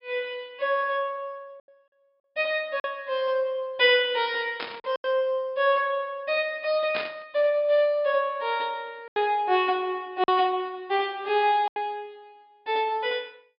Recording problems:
treble cut off; nothing above 5.5 kHz
packet loss; 3% of the sound replaced, filled with silence
static burst; at 4.5 s and at 7 s; peak -2 dB vs average level

